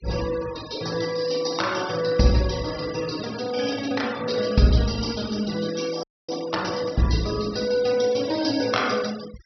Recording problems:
treble cut off; nothing above 5.8 kHz
denoising artefacts; signal-to-artefact ratio 14 dB
frozen audio; at 6 s

